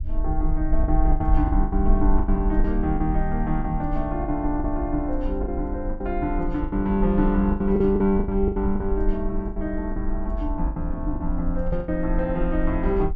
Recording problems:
rumble; below 52 Hz, SNR 4 dB
packet loss; 11% of the sound replaced, filled with the last packet

